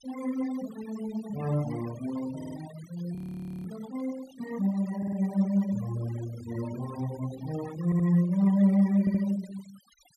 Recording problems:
denoising artefacts; signal-to-artefact ratio 18 dB
audio stuttering; 4 times, first at 2.5 s
frozen audio; at 3 s for 0.5 s

